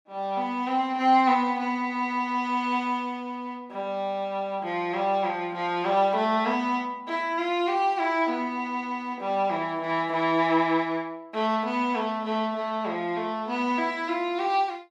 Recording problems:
none

